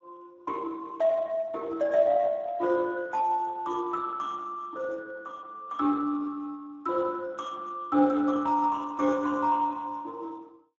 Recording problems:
lossy compression; Speex, log-spectral distance 2 dB

